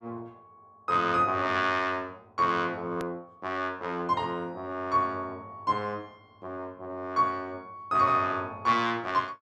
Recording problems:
edit click; at 3 s

